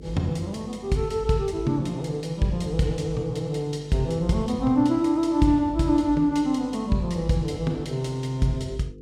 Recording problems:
electrical hum; 50 Hz, harmonics up to 500 Hz, SNR 21 dB

